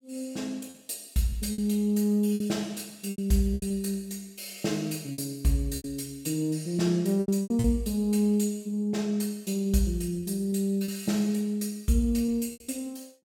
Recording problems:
packet loss; 7% of the sound replaced, filled with repeated pitch periods

